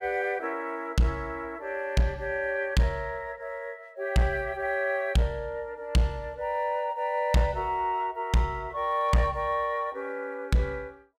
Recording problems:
distortion; hard clipping, uneven, signal-to-distortion ratio 11 dB

